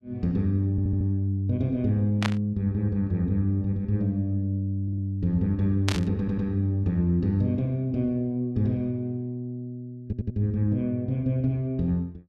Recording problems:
audio stuttering; 4 times, first at 0.5 s
burst of static; at 2 s and at 6 s; peak +2 dB vs average level

